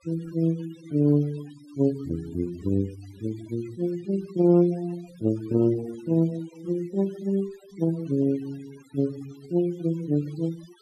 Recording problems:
denoising artefacts; signal-to-artefact ratio 23 dB

